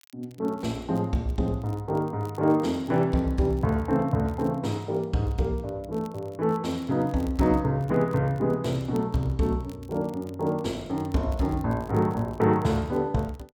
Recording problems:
crackling; vinyl, SNR 29 dB

